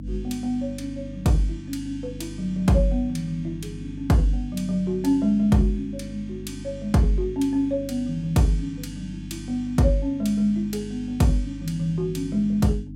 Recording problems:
hum; 50 Hz, harmonics up to 300 Hz, SNR 12 dB

